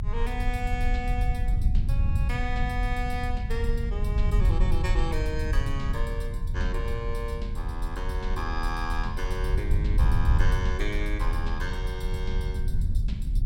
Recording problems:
rumble; below 72 Hz, SNR -5 dB

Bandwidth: 16 kHz